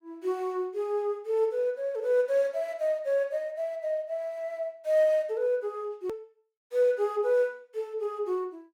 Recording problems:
hard cut with a click; at 6 s

